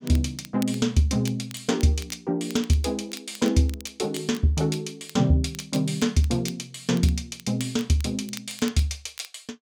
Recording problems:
crackling; vinyl, SNR 19 dB

